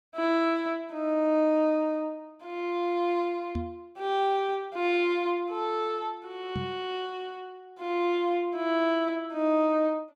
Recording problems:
knock on the microphone; at 3.5 s and at 6.5 s; peak -1 dB vs average level

